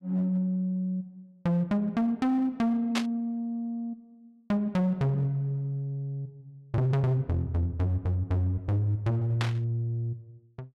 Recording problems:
distortion; hard clipping, signal-to-distortion ratio 12 dB
static burst; at 3 s and at 9.5 s; peak +2 dB vs average level

